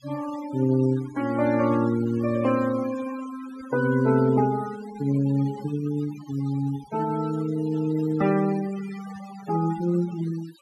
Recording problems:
noise reduction artefacts; signal-to-artefact ratio 17 dB

